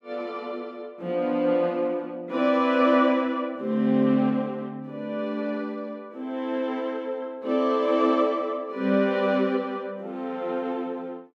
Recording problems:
none

